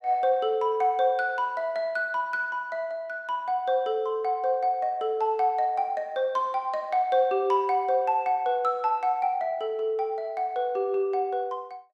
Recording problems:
none

